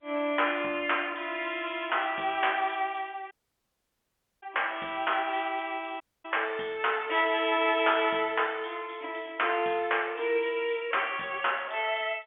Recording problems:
phone line; 240 Hz to 3.3 kHz, G.711
audio cutting out; at 3.5 s for 1 s and at 6 s

